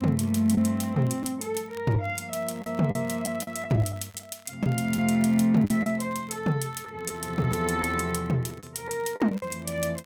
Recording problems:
crackling; vinyl, SNR 28 dB
lost packets; 6% of the sound replaced, filled with the last packet

